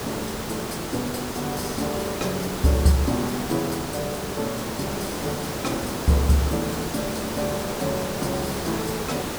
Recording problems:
background hiss; slope -5 dB per octave, SNR 3 dB

